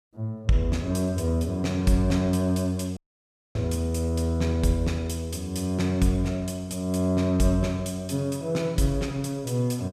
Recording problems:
dropout; at 3 s for 0.5 s

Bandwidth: 14.5 kHz